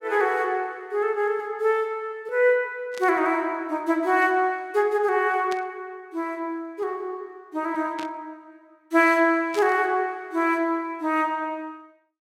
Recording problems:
static burst; 4 times, first at 3 s; peak -8 dB vs average level

